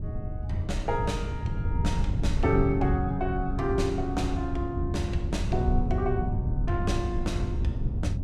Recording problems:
wind on the microphone; below 120 Hz, SNR 0 dB

